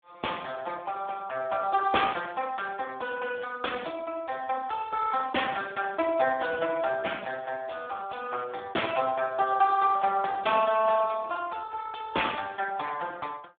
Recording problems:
phone line; 260 Hz to 3.5 kHz, Speex

